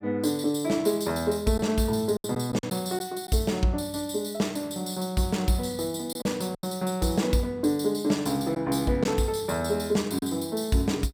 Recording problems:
lost packets; 3% of the sound replaced, filled with silence

